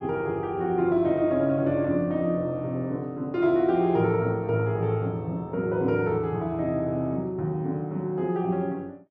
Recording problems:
none

